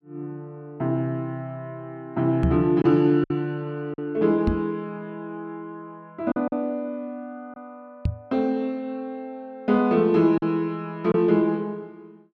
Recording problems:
packet loss; 2% of the sound replaced, filled with silence
microphone thump; at 2.5 s, at 4.5 s and at 8 s; peak +4 dB vs average level

